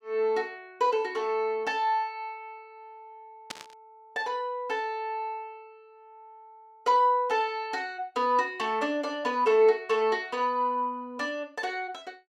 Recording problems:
static burst; at 3.5 s; peak -4 dB vs average level

